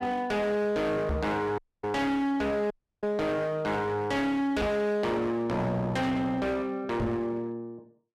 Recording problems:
distorted audio; hard clipping, uneven, signal-to-distortion ratio 7 dB
microphone bump; at 1 s, at 4.5 s and at 7 s; peak +3 dB vs average level
audio cutting out; at 1.5 s and at 2.5 s

